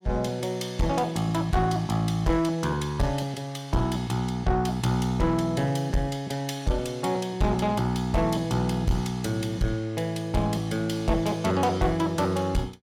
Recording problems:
distorted audio; soft clipping, signal-to-distortion ratio 11 dB

